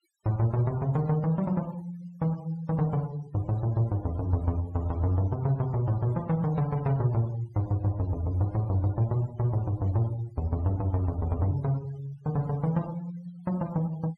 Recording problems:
noise reduction artefacts; signal-to-artefact ratio 22 dB

